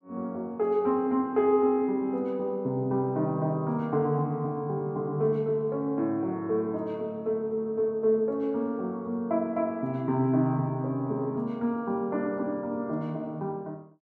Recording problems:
none

